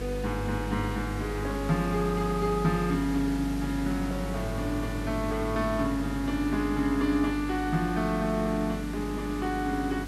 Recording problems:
hum; 50 Hz, harmonics up to 450 Hz, SNR 7 dB
hiss; slope -3 dB per octave, SNR 14 dB

